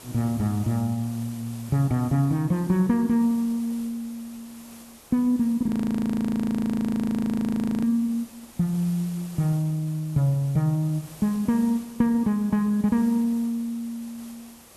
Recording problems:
background hiss; slope -3 dB per octave, SNR 22 dB
frozen audio; at 5.5 s for 2 s

